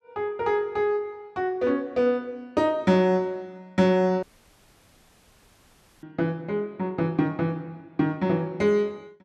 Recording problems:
dropout; at 4 s for 2 s

